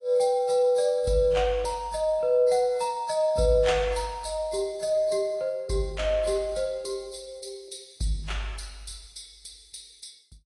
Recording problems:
codec artefacts; AAC, log-spectral distance 4 dB, nothing above 10.1 kHz

